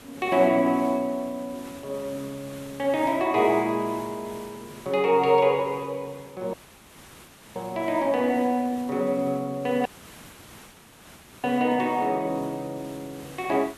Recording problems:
hiss; slope -3 dB per octave, SNR 21 dB
audio cutting out; at 6.5 s for 1 s and at 10 s for 1.5 s

